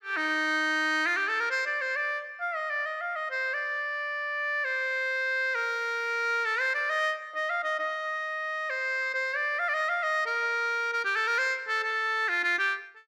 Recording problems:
none

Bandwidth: 14.5 kHz